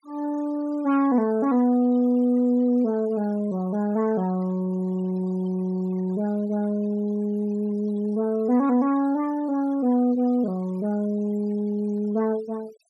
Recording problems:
noise reduction artefacts; signal-to-artefact ratio 26 dB

